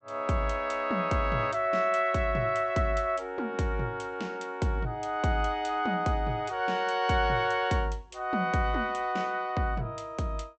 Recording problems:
treble cut off; nothing above 8 kHz

